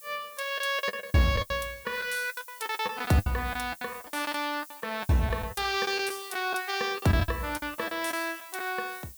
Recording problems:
background hiss; slope +5 dB per octave, SNR 16 dB
packet loss; 15% of the sound replaced, filled with the last packet

